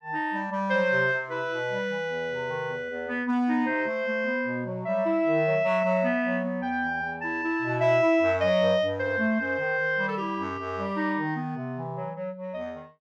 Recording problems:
none

